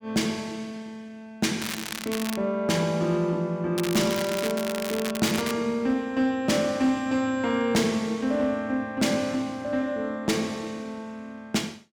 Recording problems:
distorted audio; hard clipping, signal-to-distortion ratio 12 dB
crackle; at 1.5 s and from 4 to 5.5 s; loose cable, SNR 8 dB

